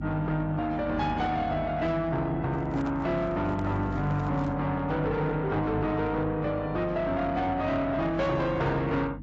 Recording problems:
lossy compression; AAC, log-spectral distance 2 dB, nothing above 7.6 kHz
distortion; soft clipping, signal-to-distortion ratio 11 dB
mains hum; 50 Hz, harmonics up to 300 Hz, SNR 12 dB
handling noise; from 2.5 to 4.5 s; peak -9 dB vs average level

